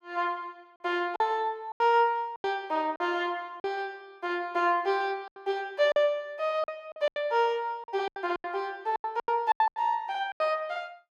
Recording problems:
lost packets; 11% of the sound replaced, filled with silence

